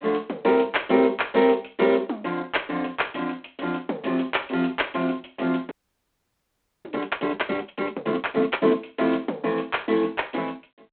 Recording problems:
phone line; 220 Hz to 3.7 kHz, G.726
audio freezing; at 5.5 s for 1 s

